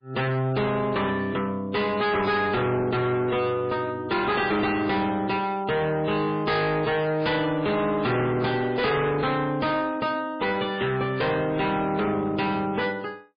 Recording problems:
codec artefacts; MP3, log-spectral distance 3 dB, nothing above 4.4 kHz
distortion; hard clipping, signal-to-distortion ratio 8 dB

